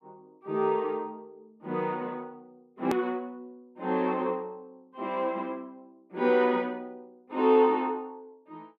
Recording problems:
edit click; at 3 s

